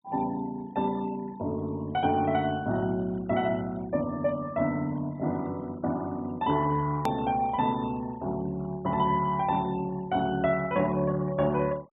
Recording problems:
treble cut off; nothing above 4 kHz
denoising artefacts; signal-to-artefact ratio 23 dB
edit click; at 7 s

